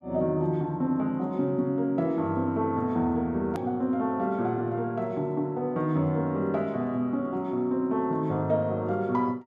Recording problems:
hard cut with a click; at 3.5 s

